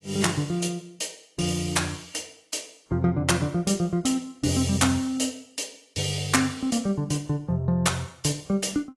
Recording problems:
codec artefacts; AAC, log-spectral distance 4 dB, nothing above 11.6 kHz

